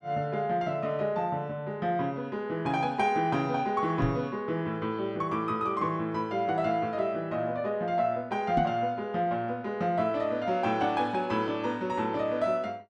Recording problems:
knock on the microphone; at 4 s and at 8.5 s; peak +3 dB vs average level

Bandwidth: 12.5 kHz